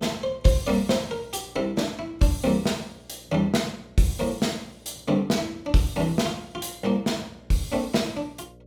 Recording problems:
hum; 60 Hz, harmonics up to 600 Hz, SNR 26 dB

